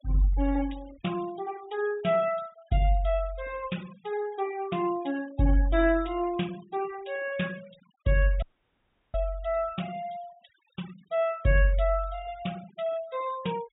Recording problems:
treble missing; nothing above 4 kHz
denoising artefacts; signal-to-artefact ratio 21 dB
dropout; at 8.5 s for 0.5 s

